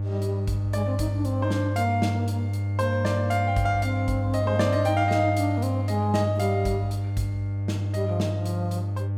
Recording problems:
hum; 50 Hz, harmonics up to 600 Hz, SNR 0 dB

